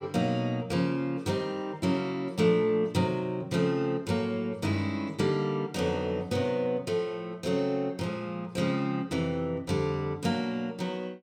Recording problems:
none

